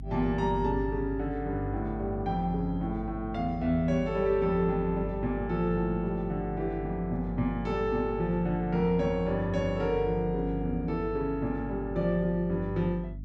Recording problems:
hum; 50 Hz, harmonics up to 300 Hz, SNR 10 dB

